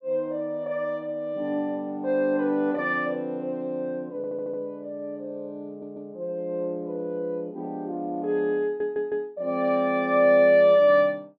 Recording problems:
stutter; at 4 s, at 5.5 s and at 8.5 s

